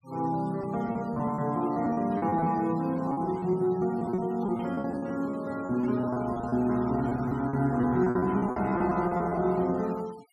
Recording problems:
noise reduction artefacts; signal-to-artefact ratio 24 dB
lost packets; 14% of the sound replaced, filled with repeated pitch periods

